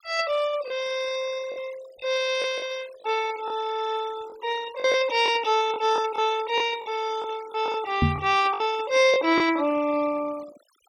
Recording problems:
denoising artefacts; signal-to-artefact ratio 19 dB
lost packets; 6% of the sound replaced, filled with the last packet
microphone thump; at 8 s; peak +6 dB vs average level

